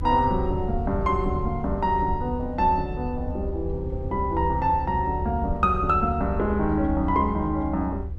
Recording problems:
rumble; below 80 Hz, SNR 7 dB

